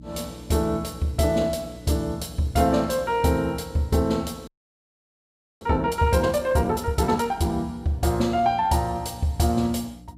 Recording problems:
hum; 60 Hz, harmonics up to 300 Hz, SNR 21 dB
audio freezing; at 4.5 s for 1 s

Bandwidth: 15.5 kHz